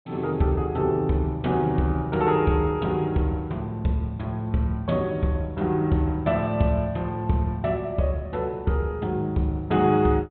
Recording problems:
treble cut off; nothing above 4 kHz

